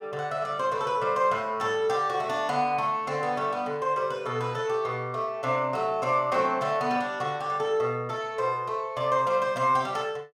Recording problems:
none

